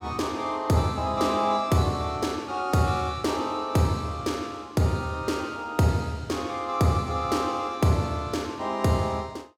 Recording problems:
none

